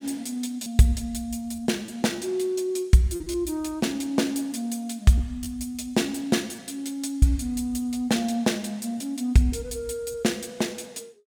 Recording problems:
lost packets; 3% of the sound replaced, filled with repeated pitch periods

